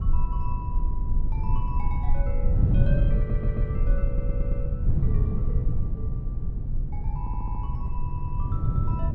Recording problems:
rumble; below 58 Hz, strongest tone 18 Hz, SNR -11 dB
wind on the microphone; below 140 Hz, SNR -11 dB
stutter; 4 times, first at 3 s

